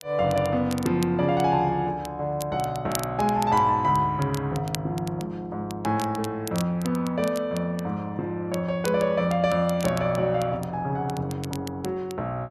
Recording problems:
crackling; vinyl, SNR 16 dB

